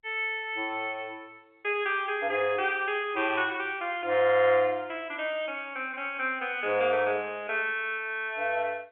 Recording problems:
telephone audio; 280 Hz to 3.3 kHz, G.711

